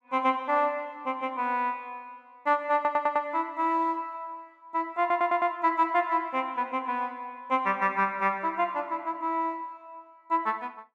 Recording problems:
stutter; at 3 s and at 5 s

